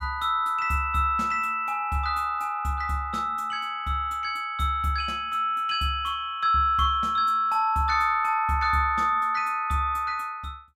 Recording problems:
none

